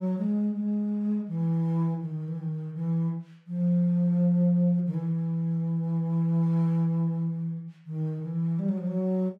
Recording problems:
none

